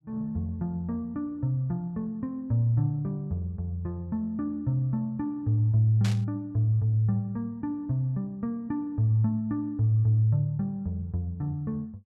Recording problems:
burst of static; at 6 s; peak -5 dB vs average level

